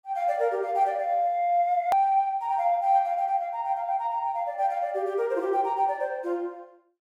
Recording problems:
edit click; at 2 s

